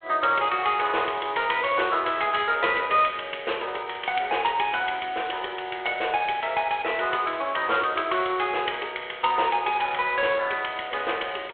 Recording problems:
phone line; 320 Hz to 3.7 kHz, G.726

